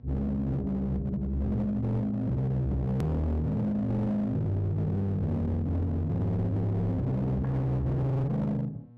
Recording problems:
distortion; hard clipping, uneven, signal-to-distortion ratio 8 dB
hum; 60 Hz, harmonics up to 840 Hz, SNR 23 dB
edit click; at 3 s

